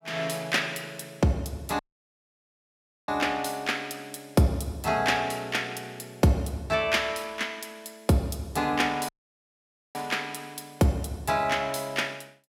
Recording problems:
dropout; at 2 s for 1.5 s and at 9 s for 1 s

